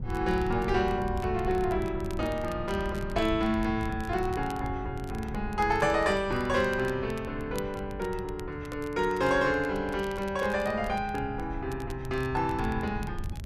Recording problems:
wind on the microphone; below 120 Hz, SNR 10 dB
crackling; vinyl, SNR 23 dB

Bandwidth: 13.5 kHz